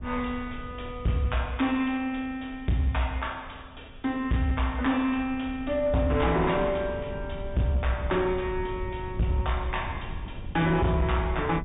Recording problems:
low-pass filter; nothing above 3.7 kHz
distorted audio; hard clipping, signal-to-distortion ratio 11 dB
wind noise; below 110 Hz, SNR 13 dB

